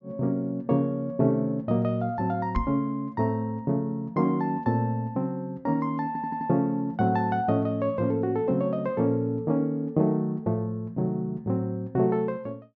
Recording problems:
treble missing; nothing above 7.2 kHz
microphone thump; at 2.5 s; peak +3 dB vs average level
audio stuttering; at 6 s

